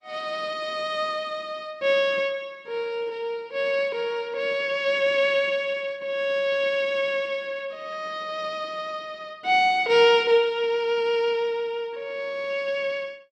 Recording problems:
codec artefacts; Opus, log-spectral distance 2 dB

